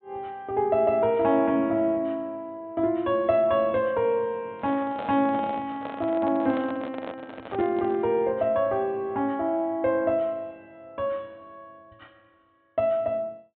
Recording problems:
treble cut off; nothing above 4 kHz
microphone handling noise; from 4.5 to 8 s; peak -6 dB vs average level

